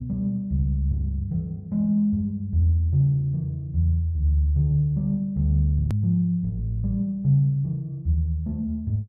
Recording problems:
click at an edit; at 6 s

